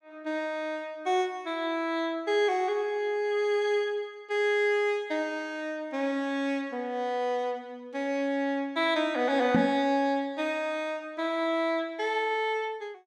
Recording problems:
microphone bump; at 9.5 s; peak +8 dB vs average level

